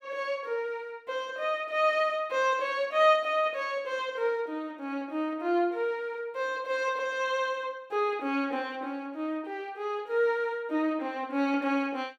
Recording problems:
none

